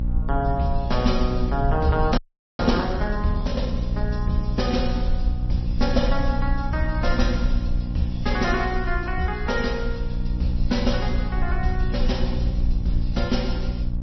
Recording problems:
codec artefacts; MP3, log-spectral distance 2 dB, nothing above 5.8 kHz
electrical hum; 60 Hz, harmonics up to 600 Hz, SNR 4 dB
rumble; below 52 Hz, SNR 2 dB
audio freezing; at 2 s

